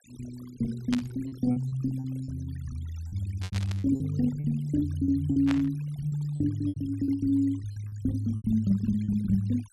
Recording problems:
denoising artefacts; signal-to-artefact ratio 22 dB
lost packets; 10% of the sound replaced, filled with repeated pitch periods
burst of static; at 1 s, at 3.5 s and at 5.5 s; peak -2 dB vs average level

